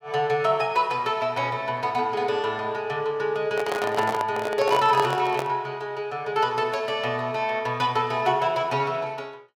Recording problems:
handling noise; from 3.5 to 5.5 s; peak +1 dB vs average level

